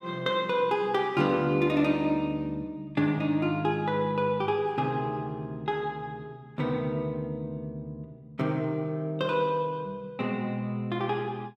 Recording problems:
none

